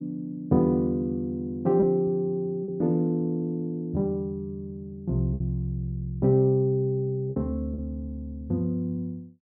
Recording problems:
lost packets; 2% of the sound replaced, filled with repeated pitch periods

